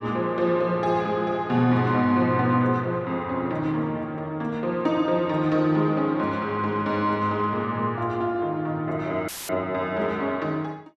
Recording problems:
dropout; at 9.5 s; filled with static

